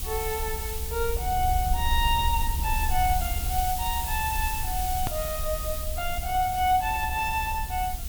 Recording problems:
background hiss; slope +3 dB per octave, SNR 5 dB
low-frequency rumble; below 70 Hz, SNR 5 dB
click at an edit; at 5 s

